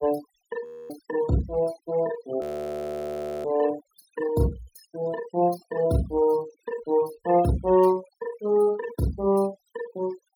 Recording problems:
denoising artefacts; signal-to-artefact ratio 18 dB
audio freezing; at 0.5 s and at 2.5 s for 1 s

